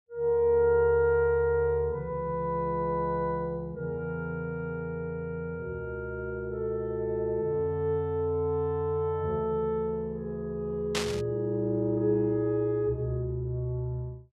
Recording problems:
burst of static; at 11 s; peak +3 dB vs average level

